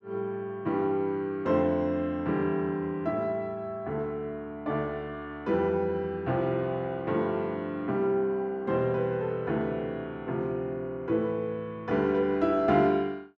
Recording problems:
none

